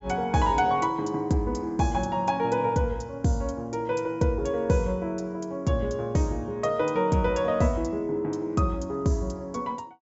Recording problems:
treble cut off; nothing above 8 kHz

